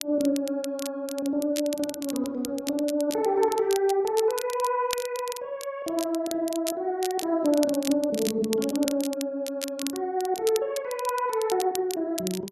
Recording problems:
crackling; vinyl, SNR 11 dB

